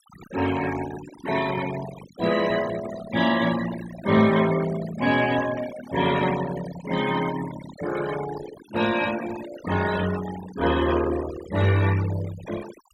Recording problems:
noise reduction artefacts; signal-to-artefact ratio 11 dB

